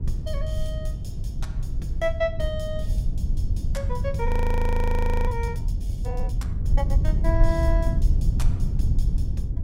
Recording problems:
low-frequency rumble; below 80 Hz, SNR -5 dB
audio freezing; at 4.5 s for 1 s

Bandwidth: 16 kHz